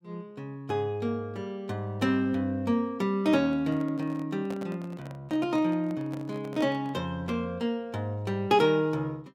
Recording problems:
handling noise; from 3.5 to 7 s; peak -8 dB vs average level

